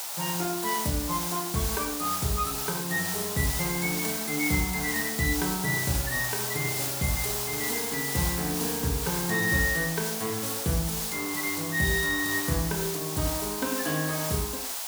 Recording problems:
hiss; SNR 1 dB

